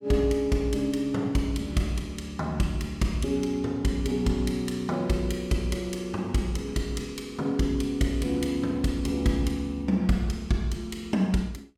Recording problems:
none

